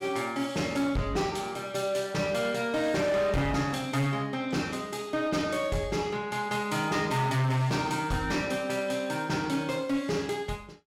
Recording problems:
distorted audio; hard clipping, signal-to-distortion ratio 11 dB

